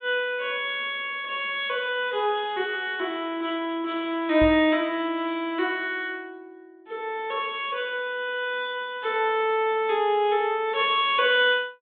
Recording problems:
low-pass filter; nothing above 4 kHz
knock on the microphone; at 4.5 s; peak -3 dB vs average level

